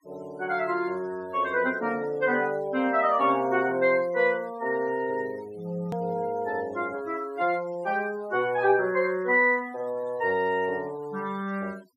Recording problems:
denoising artefacts; signal-to-artefact ratio 25 dB
hard cut with a click; at 6 s

